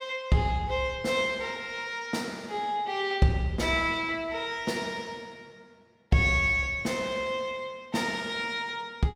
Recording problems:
none

